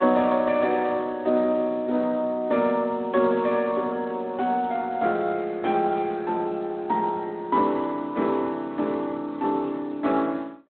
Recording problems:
phone line; 190 Hz to 3.6 kHz, Speex

